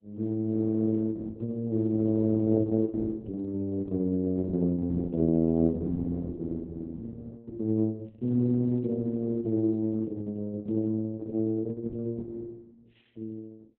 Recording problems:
lossy codec; Opus, log-spectral distance 2 dB

